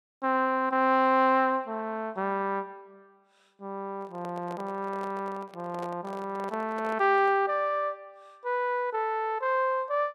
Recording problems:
microphone handling noise; from 4 to 7.5 s; peak -9 dB vs average level

